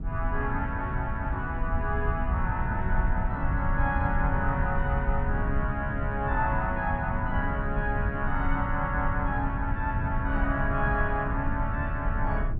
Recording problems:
rumble; below 98 Hz, SNR 1 dB

